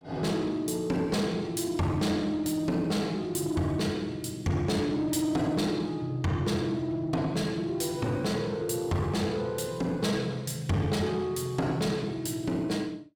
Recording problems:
distortion; soft clipping, signal-to-distortion ratio 12 dB

